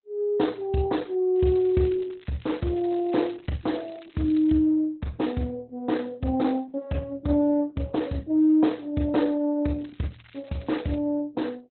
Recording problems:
codec artefacts; Opus, log-spectral distance 4 dB, nothing above 4.1 kHz
crackling; from 1.5 to 4.5 s and from 10 to 11 s; loose cable, SNR 27 dB

